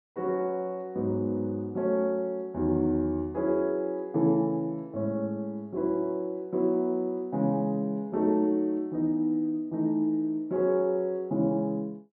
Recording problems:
none

